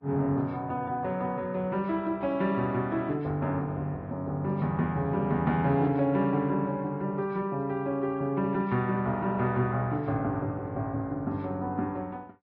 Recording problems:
lossy compression; Vorbis, log-spectral distance 2 dB

